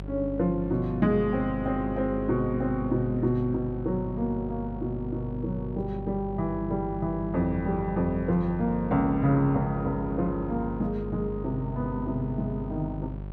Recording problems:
mains hum; 50 Hz, harmonics up to 750 Hz, SNR 9 dB

